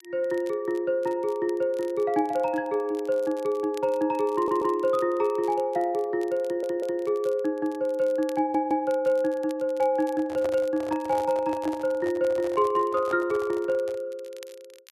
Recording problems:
crackling; vinyl, SNR 27 dB
stutter; at 4.5 s, at 6.5 s and at 8.5 s
handling noise; from 10 to 14 s; peak -5 dB vs average level

